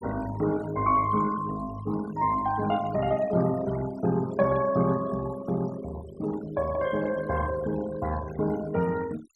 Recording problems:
noise reduction artefacts; signal-to-artefact ratio 16 dB

